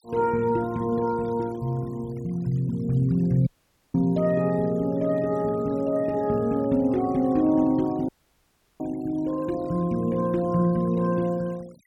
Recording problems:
noise reduction artefacts; signal-to-artefact ratio 26 dB
dropout; at 3.5 s and at 8 s for 0.5 s

